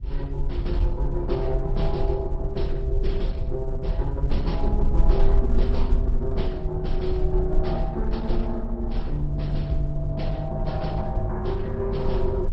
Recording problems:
codec artefacts; MP2, then Opus, log-spectral distance 2 dB
rumble; below 52 Hz, strongest tone 22 Hz, SNR -1 dB

